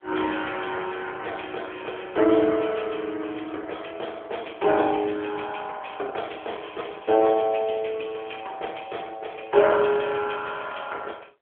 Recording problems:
telephone audio; 340 Hz to 3.4 kHz, AMR-NB

